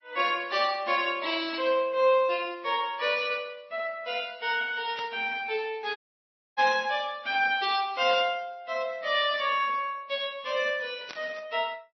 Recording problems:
codec artefacts; MP3, then MP3, log-spectral distance 3 dB, nothing above 5.8 kHz
burst of static; 4 times, first at 5 s; peak -8 dB vs average level
audio cutting out; at 6 s for 0.5 s

